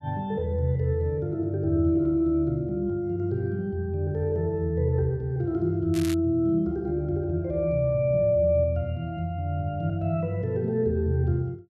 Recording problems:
crackling; at 6 s; loose cable, SNR 15 dB

